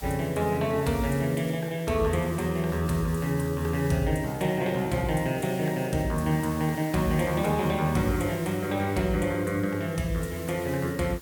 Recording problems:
hiss; slope -1 dB per octave, SNR 17 dB

